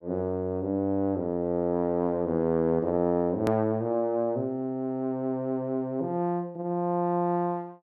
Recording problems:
click at an edit; at 3.5 s

